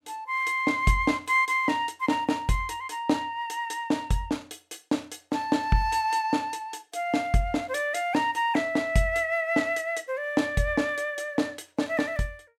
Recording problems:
none

